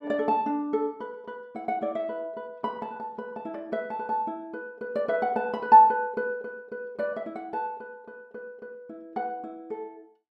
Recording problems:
none

